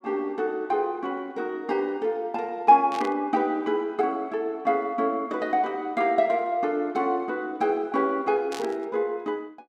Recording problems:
static burst; at 3 s and at 8.5 s; peak -8 dB vs average level

